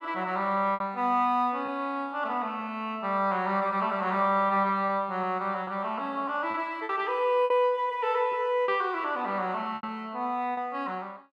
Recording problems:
lost packets; 5% of the sound replaced, filled with repeated pitch periods

